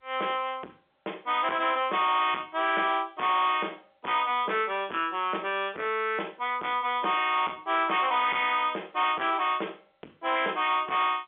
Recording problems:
phone line; 260 Hz to 3.6 kHz, G.711
distorted audio; soft clipping, signal-to-distortion ratio 10 dB

